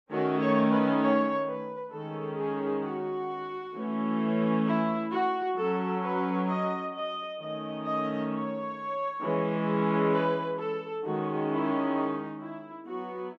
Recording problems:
none

